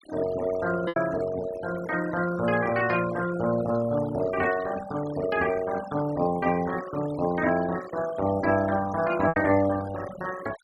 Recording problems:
denoising artefacts; signal-to-artefact ratio 13 dB
lost packets; 1.5% of the sound replaced, filled with repeated pitch periods

